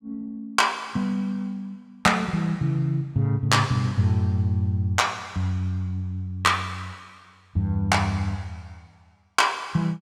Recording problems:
none

